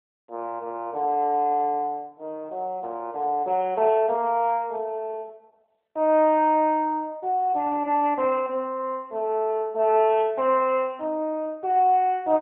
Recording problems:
phone line; 280 Hz to 3.3 kHz, AMR-NB

